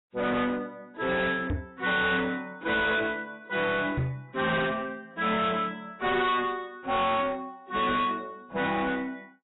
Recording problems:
lossy codec; AAC, log-spectral distance 4 dB, nothing above 3.8 kHz
distortion; soft clipping, signal-to-distortion ratio 6 dB
microphone bump; at 1.5 s and at 4 s; peak +2 dB vs average level

